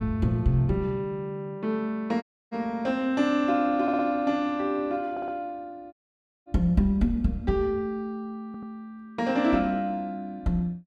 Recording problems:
dropout; at 2 s and at 6 s for 0.5 s
stutter; at 4 s, at 5 s and at 8.5 s

